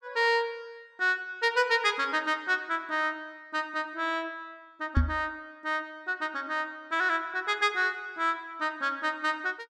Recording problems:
microphone thump; at 5 s; peak +8 dB vs average level

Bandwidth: 13 kHz